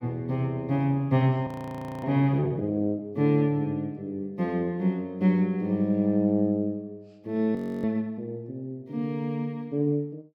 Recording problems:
audio freezing; at 1.5 s for 0.5 s and at 7.5 s

